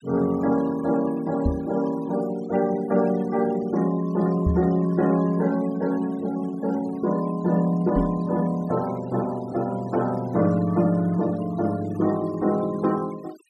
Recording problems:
denoising artefacts; signal-to-artefact ratio 21 dB
microphone bump; at 1.5 s, at 4.5 s and at 8 s; peak +3 dB vs average level

